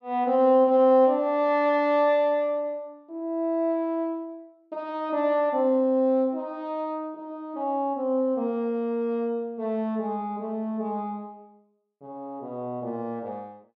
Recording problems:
none

